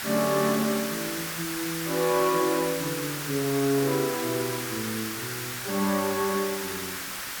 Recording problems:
background hiss; SNR 4 dB

